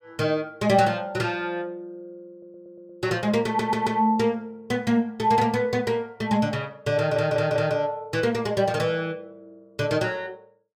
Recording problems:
audio stuttering; at 2.5 s, at 3.5 s and at 7 s

